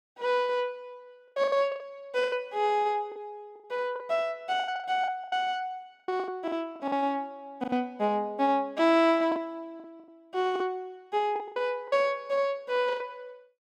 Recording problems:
lost packets; 12% of the sound replaced, filled with the last packet

